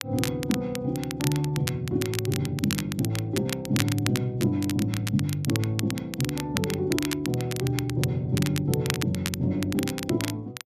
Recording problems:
crackling; vinyl, SNR 7 dB

